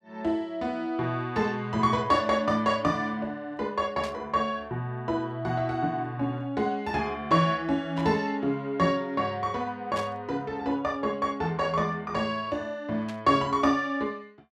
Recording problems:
static burst; 4 times, first at 4 s; peak -10 dB vs average level

